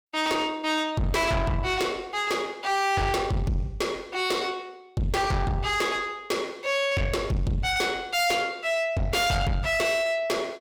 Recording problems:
distorted audio; soft clipping, signal-to-distortion ratio 7 dB

